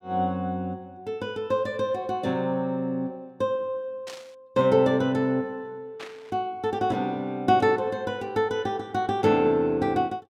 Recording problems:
static burst; at 4 s and at 6 s; peak -10 dB vs average level

